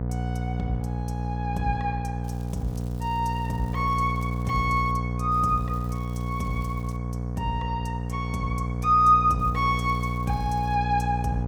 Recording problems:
mains hum; 60 Hz, harmonics up to 960 Hz, SNR 4 dB
crackling; from 2 to 5 s, from 5.5 to 7 s and from 9.5 to 11 s; loose cable, SNR 28 dB

